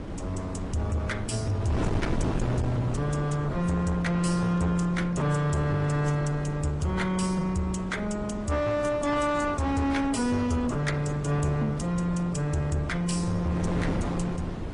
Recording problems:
lossy codec; AAC, then MP3, log-spectral distance 2 dB, nothing above 9.8 kHz
distorted audio; soft clipping, signal-to-distortion ratio 11 dB
wind on the microphone; below 410 Hz, SNR 7 dB

